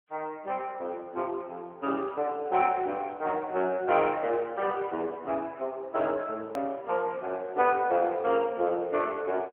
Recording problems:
telephone audio; 300 Hz to 3.3 kHz, AMR-NB
click at an edit; at 6.5 s

